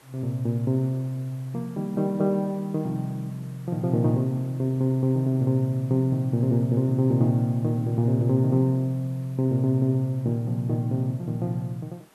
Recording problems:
background hiss; slope -4 dB per octave, SNR 29 dB

